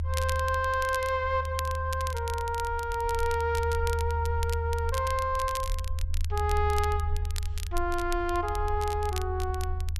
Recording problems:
low-frequency rumble; below 80 Hz, strongest tone 80 Hz, SNR 4 dB
crackling; vinyl, SNR 13 dB

